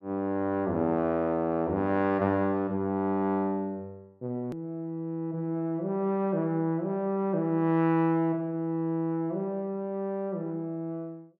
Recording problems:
edit click; at 4.5 s

